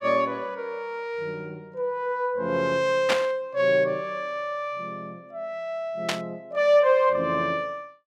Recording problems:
static burst; at 3 s and at 6 s; peak +4 dB vs average level

